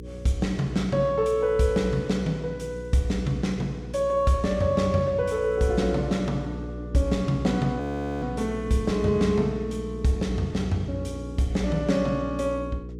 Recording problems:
hum; 60 Hz, harmonics up to 480 Hz, SNR 11 dB
audio freezing; at 8 s

